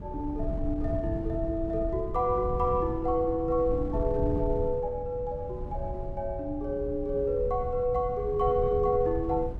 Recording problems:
wind noise; below 120 Hz, SNR 7 dB

